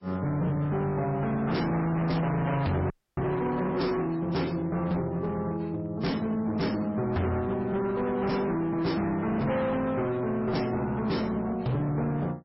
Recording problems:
codec artefacts; MP3, log-spectral distance 2 dB, nothing above 5.5 kHz
distortion; hard clipping, signal-to-distortion ratio 7 dB
audio freezing; at 3 s

